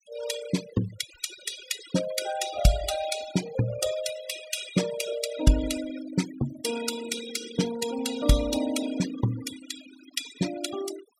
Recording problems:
denoising artefacts; signal-to-artefact ratio 9 dB

